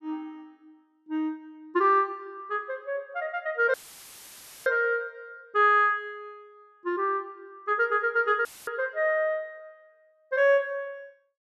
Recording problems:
audio cutting out; at 3.5 s for 1 s and at 8.5 s; filled with static

